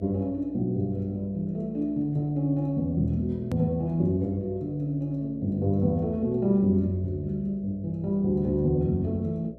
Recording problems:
hum; 60 Hz, harmonics up to 660 Hz, SNR 21 dB
click at an edit; at 3.5 s

